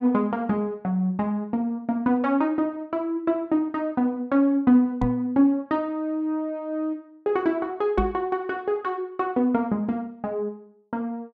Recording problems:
microphone bump; at 5 s and at 8 s; peak +1 dB vs average level

